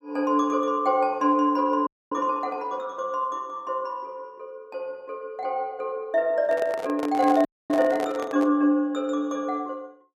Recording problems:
frozen audio; at 2 s and at 7.5 s
handling noise; from 6.5 to 8.5 s; peak -4 dB vs average level

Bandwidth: 14.5 kHz